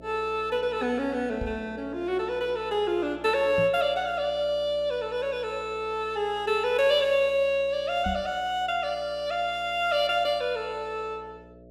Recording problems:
electrical hum; 60 Hz, harmonics up to 660 Hz, SNR 22 dB
microphone bump; at 1.5 s, at 3.5 s and at 8 s; peak -2 dB vs average level

